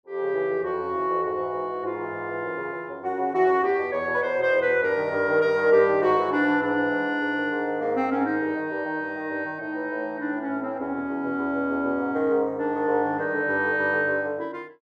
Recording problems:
none

